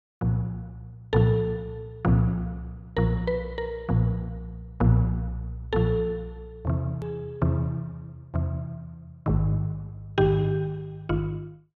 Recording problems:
edit click; at 7 s

